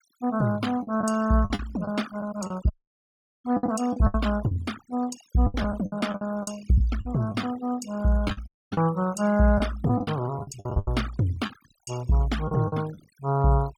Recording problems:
noise reduction artefacts; signal-to-artefact ratio 16 dB
lost packets; 11% of the sound replaced, filled with the last packet
audio cutting out; at 2.5 s for 0.5 s and at 8.5 s

